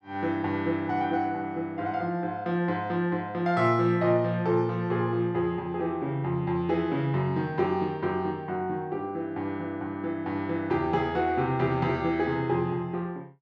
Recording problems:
none

